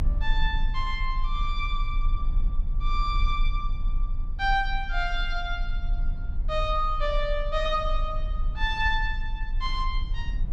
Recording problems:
rumble; below 40 Hz, strongest tone 26 Hz, SNR 2 dB

